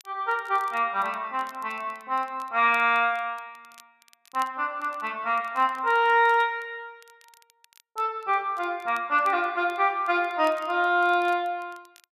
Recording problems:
crackling; vinyl, SNR 30 dB

